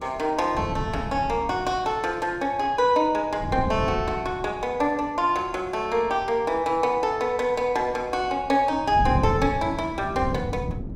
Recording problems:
wind on the microphone; below 200 Hz, SNR 7 dB

